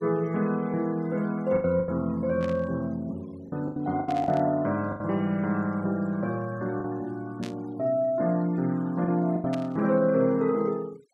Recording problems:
denoising artefacts; signal-to-artefact ratio 26 dB
packet loss; 6% of the sound replaced, filled with the last packet
burst of static; 4 times, first at 2.5 s; peak -9 dB vs average level

